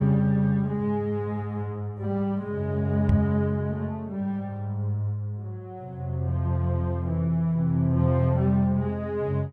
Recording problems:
knock on the microphone; at 3 s; peak +7 dB vs average level

